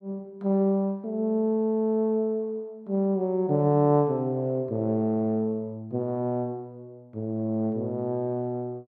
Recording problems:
none

